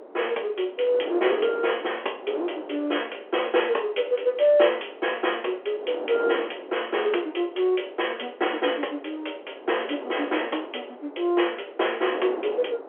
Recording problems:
phone line; 300 Hz to 3.3 kHz, G.711
wind on the microphone; below 680 Hz, SNR 12 dB

